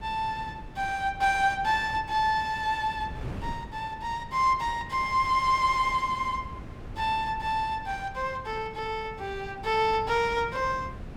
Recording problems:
wind on the microphone; below 260 Hz, SNR 15 dB

